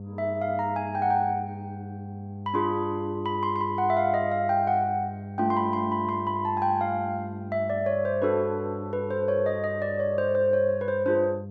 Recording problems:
mains hum; 50 Hz, harmonics up to 700 Hz, SNR 11 dB

